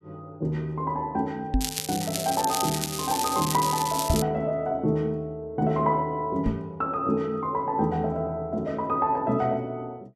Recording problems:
microphone thump; at 1.5 s, at 4 s and at 6.5 s; peak +5 dB vs average level
crackle; from 1.5 to 4 s; loose cable, SNR 4 dB

